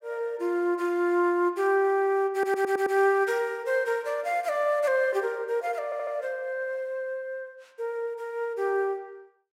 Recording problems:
audio stuttering; at 2.5 s and at 6 s

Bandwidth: 16 kHz